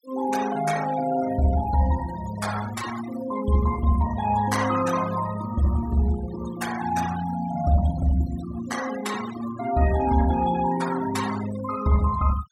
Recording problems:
denoising artefacts; signal-to-artefact ratio 12 dB

